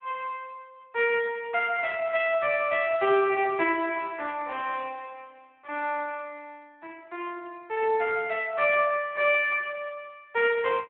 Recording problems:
phone line; 340 Hz to 3.3 kHz, Speex

